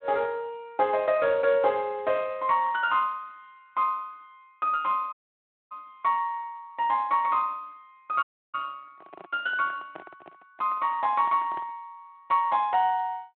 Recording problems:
telephone audio; 110 Hz to 3.4 kHz, Speex
audio cutting out; at 5 s for 0.5 s and at 8 s
microphone handling noise; from 9 to 12 s; peak -11 dB vs average level

